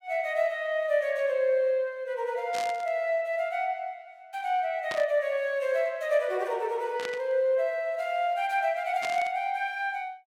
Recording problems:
static burst; 4 times, first at 2.5 s; peak -4 dB vs average level

